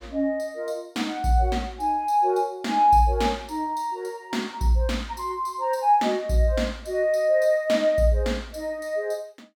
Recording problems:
none

